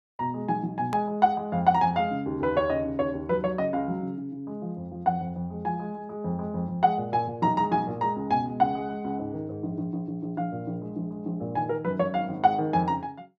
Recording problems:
hard cut with a click; at 1 s

